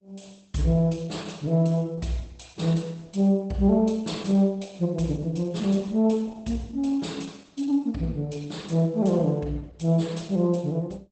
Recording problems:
codec artefacts; Opus, log-spectral distance 3 dB, nothing above 8.2 kHz

